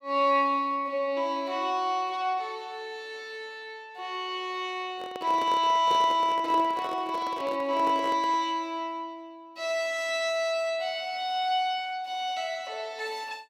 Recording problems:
handling noise; from 5 to 8.5 s; peak -4 dB vs average level

